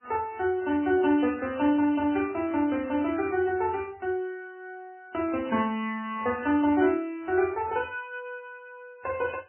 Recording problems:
codec artefacts; MP3, log-spectral distance 3 dB, nothing above 2.5 kHz

